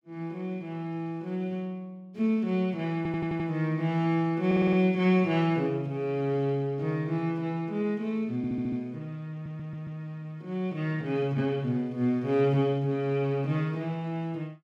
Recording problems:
audio stuttering; 4 times, first at 3 s

